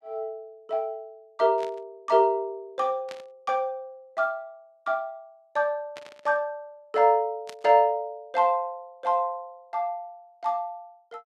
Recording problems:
burst of static; 4 times, first at 1.5 s; peak -10 dB vs average level

